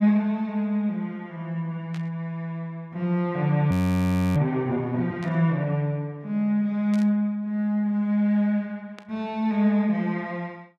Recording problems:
static burst; 4 times, first at 2 s; peak -13 dB vs average level
frozen audio; at 3.5 s for 0.5 s

